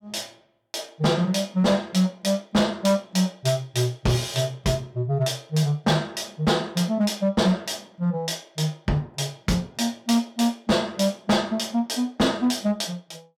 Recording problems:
distortion; hard clipping, signal-to-distortion ratio 11 dB

